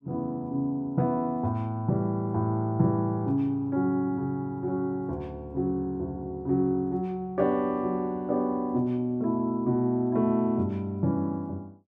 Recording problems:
none

